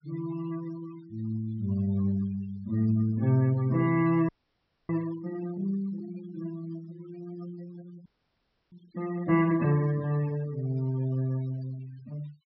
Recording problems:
low-pass filter; nothing above 5.7 kHz
denoising artefacts; signal-to-artefact ratio 21 dB
frozen audio; at 4.5 s for 0.5 s and at 8 s for 0.5 s

